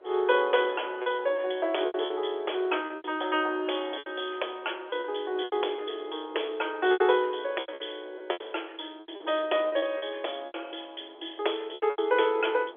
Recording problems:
telephone audio; 320 Hz to 3.4 kHz, G.711
wind noise; below 650 Hz, SNR 22 dB
lost packets; 11% of the sound replaced, filled with repeated pitch periods

